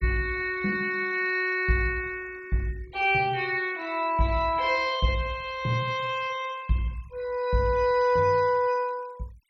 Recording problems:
denoising artefacts; signal-to-artefact ratio 24 dB

